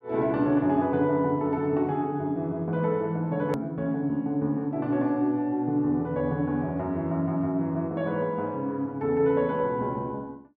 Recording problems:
edit click; at 3.5 s

